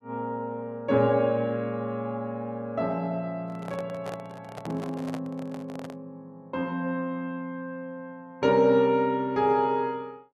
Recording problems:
handling noise; from 3.5 to 6 s; peak -6 dB vs average level

